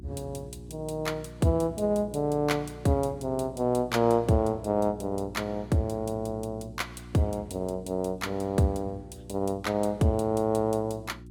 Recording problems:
hum; 60 Hz, harmonics up to 360 Hz, SNR 17 dB

